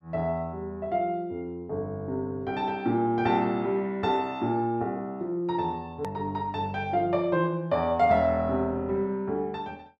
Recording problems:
edit click; at 6 s

